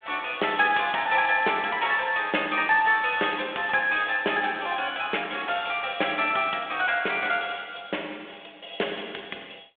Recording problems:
telephone audio; 320 Hz to 3.6 kHz, G.726

